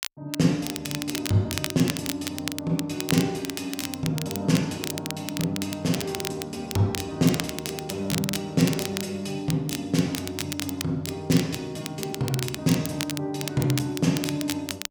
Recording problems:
crackle; vinyl, SNR 7 dB

